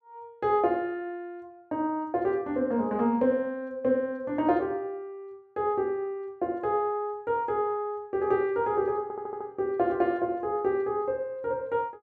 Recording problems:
stutter; at 9 s

